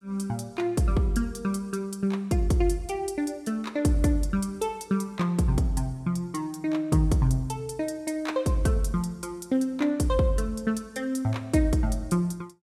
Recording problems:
none

